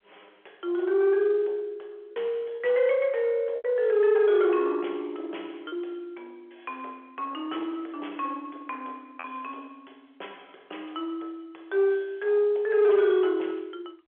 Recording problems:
telephone audio; 320 Hz to 3.4 kHz, G.711
distortion; soft clipping, signal-to-distortion ratio 12 dB
lost packets; 1.7% of the sound replaced, filled with repeated pitch periods

